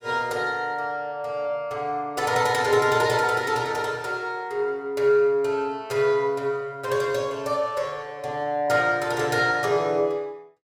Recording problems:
none

